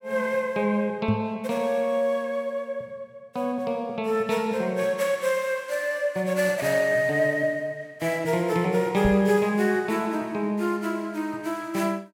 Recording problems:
microphone bump; at 1 s and at 9 s; peak +2 dB vs average level

